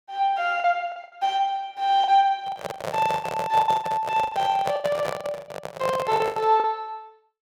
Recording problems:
lost packets; 14% of the sound replaced, filled with the last packet
handling noise; from 2.5 to 6.5 s; peak -1 dB vs average level

